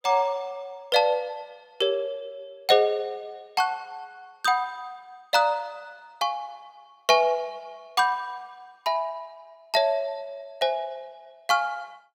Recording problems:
none

